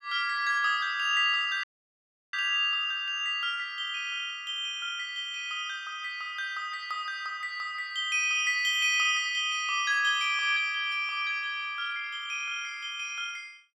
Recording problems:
audio cutting out; at 1.5 s for 0.5 s

